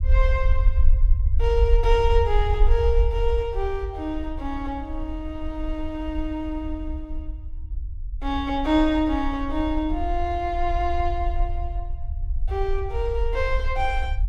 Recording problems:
low-frequency rumble; below 58 Hz, SNR 1 dB

